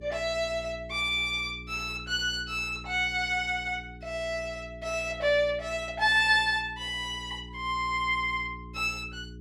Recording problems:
hum; 60 Hz, harmonics up to 420 Hz, SNR 17 dB

